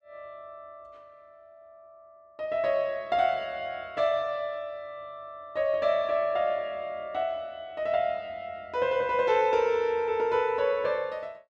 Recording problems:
none

